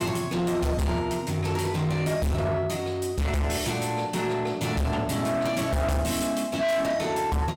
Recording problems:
distortion; soft clipping, signal-to-distortion ratio 6 dB

